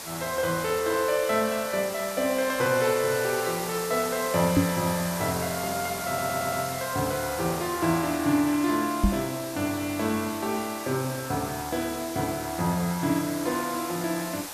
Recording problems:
hiss; SNR 8 dB
knock on the microphone; at 4.5 s and at 9 s; peak +8 dB vs average level
audio stuttering; at 6 s

